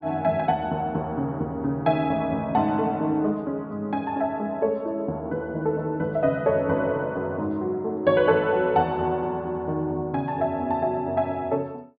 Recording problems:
low-pass filter; nothing above 5 kHz

